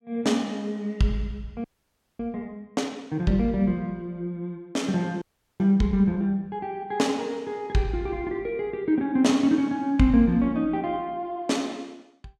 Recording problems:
frozen audio; at 1.5 s for 0.5 s and at 5 s

